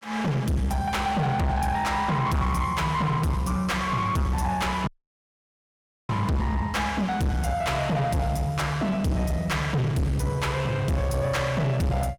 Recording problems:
distortion; soft clipping, signal-to-distortion ratio 6 dB
audio cutting out; at 5 s for 1 s

